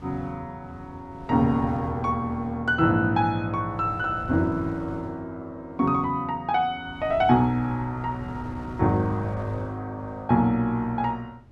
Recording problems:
wind on the microphone; below 260 Hz, SNR 17 dB

